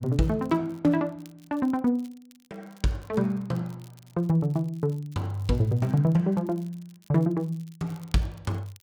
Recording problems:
crackling; vinyl, SNR 30 dB

